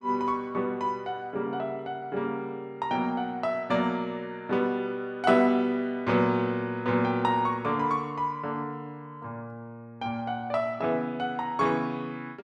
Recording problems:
none

